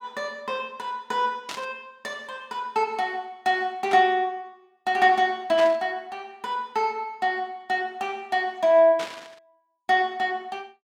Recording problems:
static burst; 4 times, first at 1.5 s; peak -5 dB vs average level

